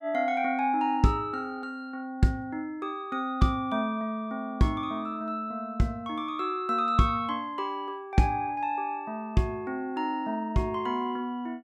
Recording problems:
none

